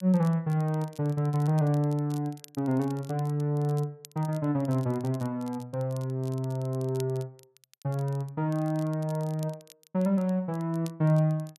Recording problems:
crackling; vinyl, SNR 24 dB

